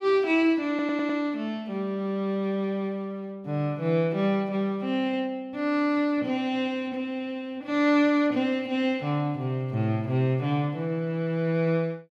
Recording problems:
audio stuttering; at 0.5 s

